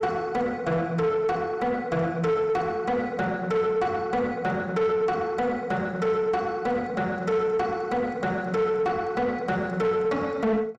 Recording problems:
distortion; soft clipping, signal-to-distortion ratio 11 dB

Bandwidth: 12 kHz